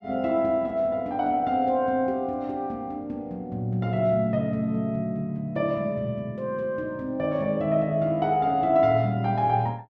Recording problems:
none

